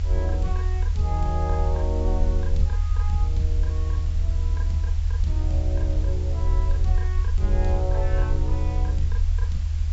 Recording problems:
treble missing; nothing above 7.6 kHz
hiss; slope -1 dB per octave, SNR 14 dB
low-frequency rumble; below 78 Hz, SNR -8 dB

